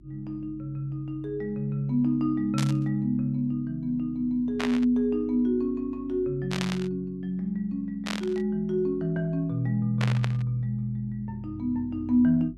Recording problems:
hum; 50 Hz, harmonics up to 350 Hz, SNR 23 dB
burst of static; 5 times, first at 2.5 s; peak 0 dB vs average level

